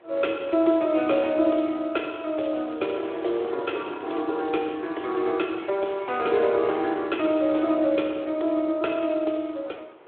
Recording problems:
telephone audio; 280 Hz to 3.6 kHz, Speex
wind noise; below 1.1 kHz, SNR 22 dB
crackling; from 2.5 to 4.5 s; loose cable, SNR 29 dB

